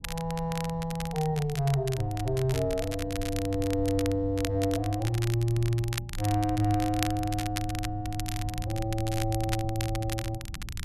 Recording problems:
low-frequency rumble; below 98 Hz, SNR 12 dB
crackling; vinyl, SNR 10 dB

